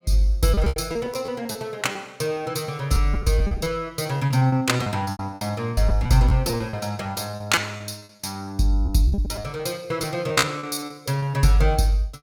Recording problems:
lost packets; 14% of the sound replaced, filled with repeated pitch periods

